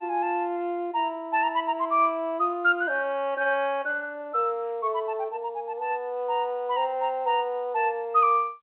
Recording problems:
phone line; 320 Hz to 3.3 kHz, G.711

